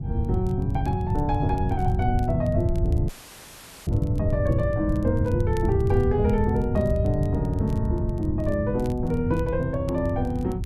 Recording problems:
wind noise; below 130 Hz, SNR 0 dB
crackle; vinyl, SNR 28 dB
dropout; at 3 s for 1 s; filled with static

